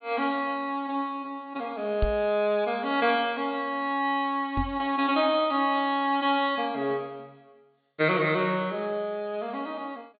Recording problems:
treble missing; nothing above 4.5 kHz
microphone bump; at 2 s and at 4.5 s; peak +3 dB vs average level

